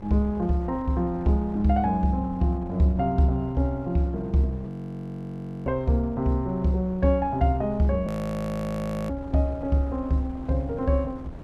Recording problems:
wind on the microphone; below 320 Hz, SNR 16 dB
frozen audio; at 4.5 s for 1 s and at 8 s for 1 s

